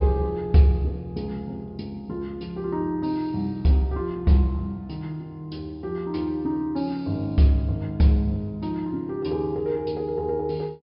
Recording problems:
low-pass filter; nothing above 5.3 kHz

